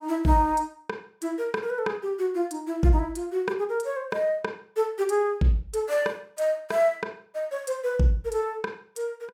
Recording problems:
none

